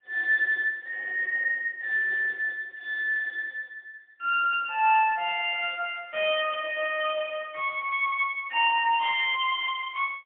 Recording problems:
telephone audio; 280 Hz to 3.4 kHz, AMR-NB, then MP3

